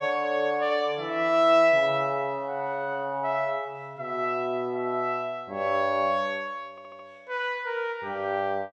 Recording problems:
audio stuttering; at 6.5 s

